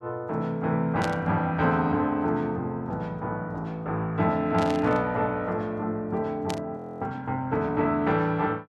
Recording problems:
static burst; at 1 s, at 4.5 s and at 6.5 s; peak -4 dB vs average level
audio freezing; at 7 s

